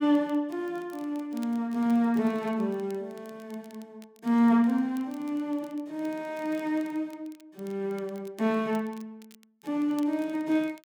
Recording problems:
crackling; vinyl, SNR 28 dB

